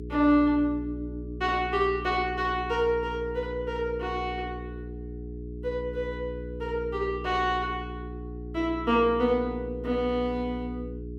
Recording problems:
hum; 60 Hz, harmonics up to 420 Hz, SNR 10 dB

